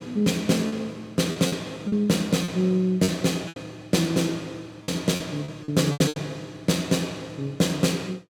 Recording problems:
lost packets; 8% of the sound replaced, filled with repeated pitch periods

